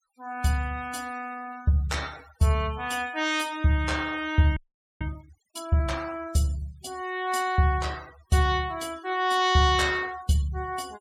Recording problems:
noise reduction artefacts; signal-to-artefact ratio 20 dB
audio freezing; at 4.5 s

